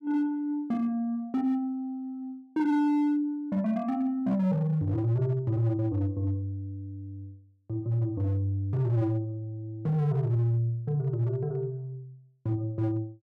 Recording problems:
distortion; hard clipping, signal-to-distortion ratio 12 dB

